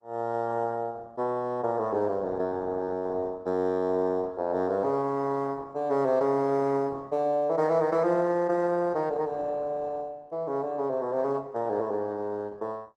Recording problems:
codec artefacts; Opus, log-spectral distance 2 dB, nothing above 12 kHz

